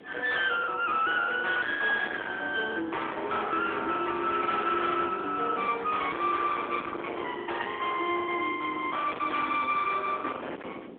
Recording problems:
phone line; 280 Hz to 3.5 kHz, AMR-NB
distortion; hard clipping, signal-to-distortion ratio 7 dB
background hiss; SNR 30 dB
wind noise; below 1.7 kHz, SNR 14 dB
packet loss; 16% of the sound replaced, filled with the last packet

